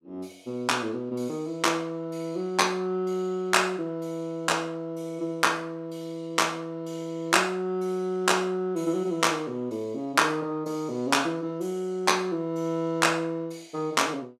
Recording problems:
none

